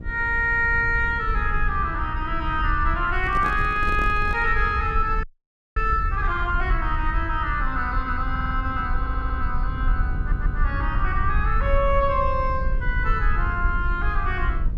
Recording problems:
electrical hum; 60 Hz, harmonics up to 1.2 kHz, SNR 21 dB
rumble; below 64 Hz, SNR 4 dB
handling noise; from 3 to 4.5 s; peak -6 dB vs average level
audio freezing; at 5 s for 0.5 s
audio stuttering; at 8.5 s, at 9 s and at 10 s

